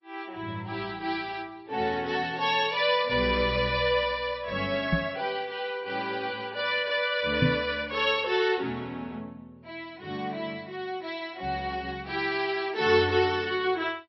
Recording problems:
lossy compression; MP3, log-spectral distance 2 dB, nothing above 4.8 kHz
microphone bump; at 5 s and at 7.5 s; peak +7 dB vs average level

